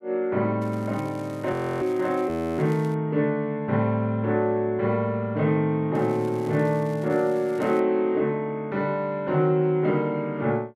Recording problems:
crackle; from 0.5 to 3 s and from 6 to 8 s; loose cable, SNR 27 dB
audio freezing; at 1.5 s and at 2.5 s

